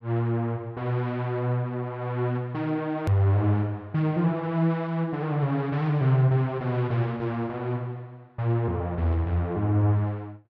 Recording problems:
hard cut with a click; at 3 s

